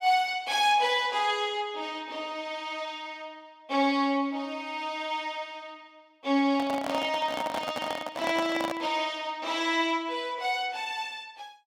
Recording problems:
microphone handling noise; from 6.5 to 9 s; peak 0 dB vs average level

